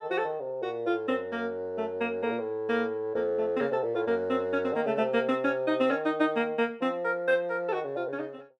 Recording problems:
none

